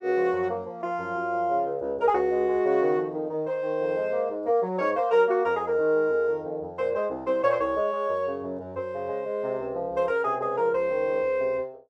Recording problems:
none

